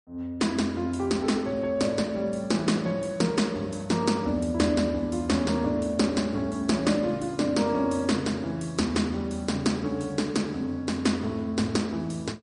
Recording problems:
lossy compression; MP3, log-spectral distance 2 dB, nothing above 10.4 kHz

